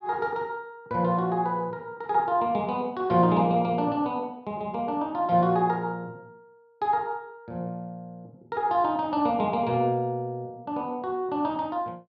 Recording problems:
none

